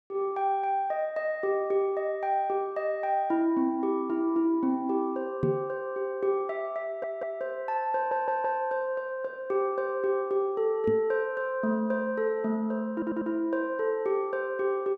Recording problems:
knock on the microphone; at 5.5 s and at 11 s; peak +3 dB vs average level
stutter; at 7 s, at 8 s and at 13 s

